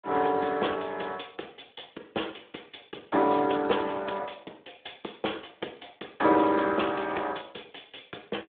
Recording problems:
telephone audio; 240 Hz to 3.6 kHz, Speex

